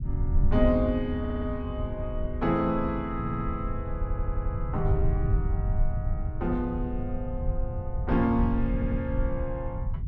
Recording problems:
rumble; below 92 Hz, SNR 1 dB
audio stuttering; 4 times, first at 1 s

